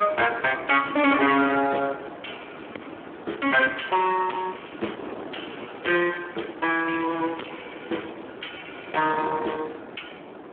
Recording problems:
phone line; 280 Hz to 3.3 kHz, Speex
distorted audio; soft clipping, signal-to-distortion ratio 8 dB
wind on the microphone; below 1.2 kHz, SNR 14 dB

